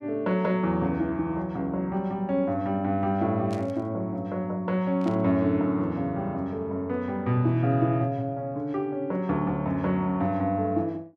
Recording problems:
burst of static; at 3.5 s and at 5 s; peak -13 dB vs average level

